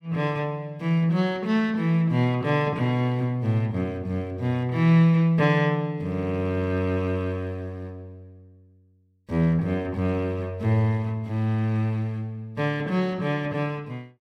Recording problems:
none

